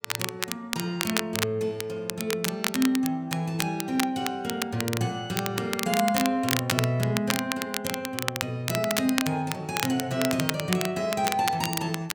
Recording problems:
crackle; vinyl, SNR 3 dB

